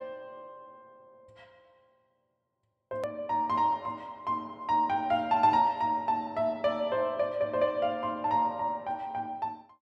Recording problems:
hard cut with a click; at 3 s

